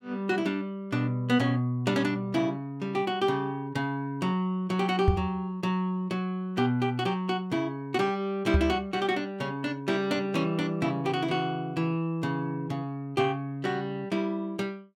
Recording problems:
microphone thump; at 5 s and at 8.5 s; peak +9 dB vs average level

